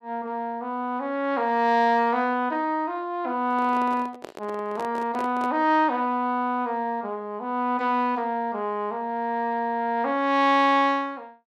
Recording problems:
microphone handling noise; from 3.5 to 5.5 s; peak -7 dB vs average level

